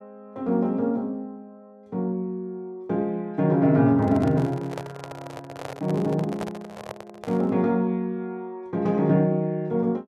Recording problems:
handling noise; from 4 to 7.5 s; peak -4 dB vs average level

